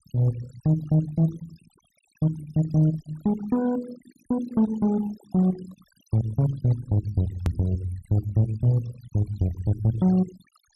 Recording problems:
denoising artefacts; signal-to-artefact ratio 19 dB
hard cut with a click; at 7.5 s

